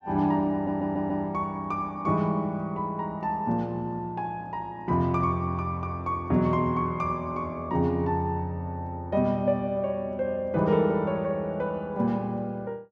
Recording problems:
audio stuttering; at 0.5 s

